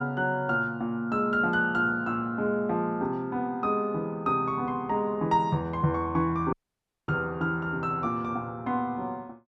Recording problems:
dropout; at 6.5 s for 0.5 s

